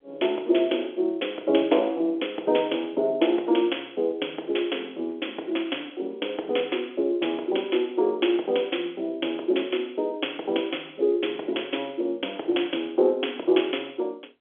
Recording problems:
phone line; 280 Hz to 3.4 kHz, G.711

